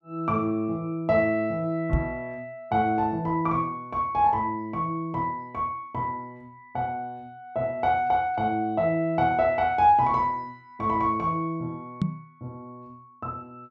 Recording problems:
knock on the microphone; at 2 s and at 12 s; peak +5 dB vs average level

